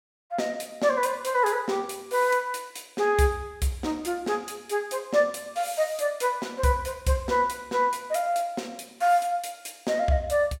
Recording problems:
none

